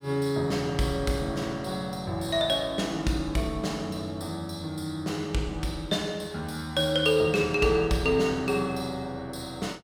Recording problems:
none

